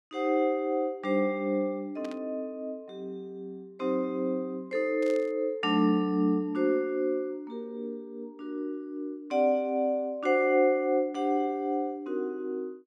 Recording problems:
static burst; at 2 s and at 5 s; peak -13 dB vs average level

